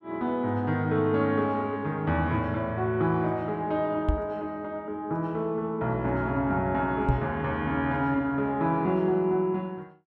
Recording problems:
microphone bump; at 4 s and at 7 s; peak +6 dB vs average level

